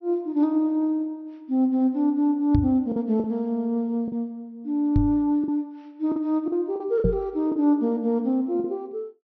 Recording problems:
treble cut off; nothing above 5.9 kHz
lost packets; 4% of the sound replaced, filled with the last packet
microphone thump; at 2.5 s, at 5 s and at 7 s; peak +5 dB vs average level

